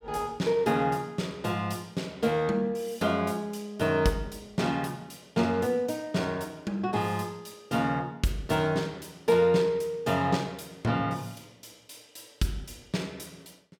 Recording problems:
none

